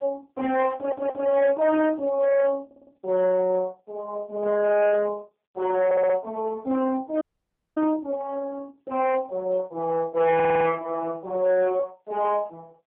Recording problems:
phone line; 220 Hz to 3.1 kHz, AMR-NB
distorted audio; hard clipping, signal-to-distortion ratio 11 dB
audio stuttering; 4 times, first at 1 s
dropout; at 7 s for 0.5 s

